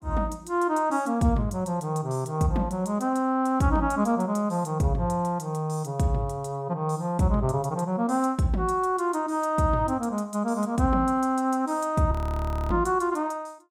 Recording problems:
frozen audio; at 12 s for 0.5 s

